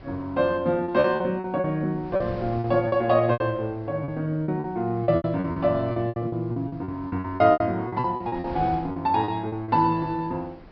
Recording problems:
low-pass filter; nothing above 5.5 kHz
wind noise; below 600 Hz, SNR 20 dB
packet loss; 15% of the sound replaced, filled with repeated pitch periods

